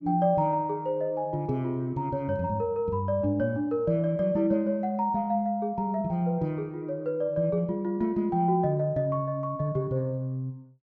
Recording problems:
none

